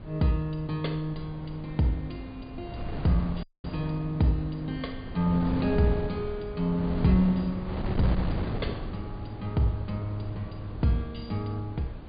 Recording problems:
treble missing; nothing above 4.8 kHz
wind noise; below 260 Hz, SNR 8 dB
audio cutting out; at 3.5 s

